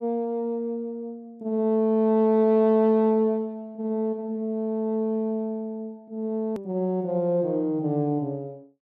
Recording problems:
click at an edit; at 6.5 s

